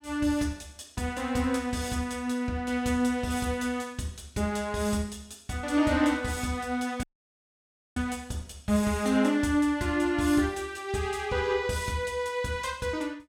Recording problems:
dropout; at 7 s for 1 s

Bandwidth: 17 kHz